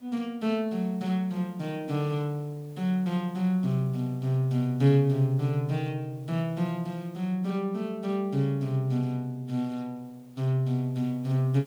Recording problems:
hiss; slope -5 dB per octave, SNR 30 dB

